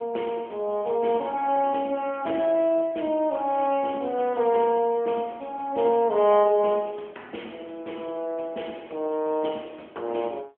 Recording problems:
telephone audio; 260 Hz to 3.2 kHz, AMR-NB

